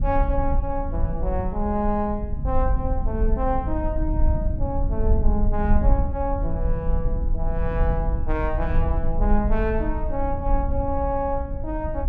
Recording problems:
low-frequency rumble; below 62 Hz, SNR -1 dB

